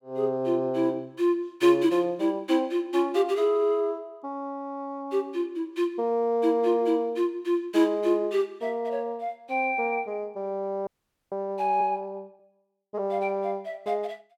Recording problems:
audio freezing; at 11 s

